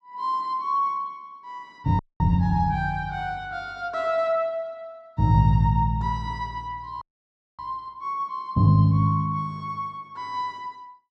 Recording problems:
frozen audio; at 2 s and at 7 s for 0.5 s

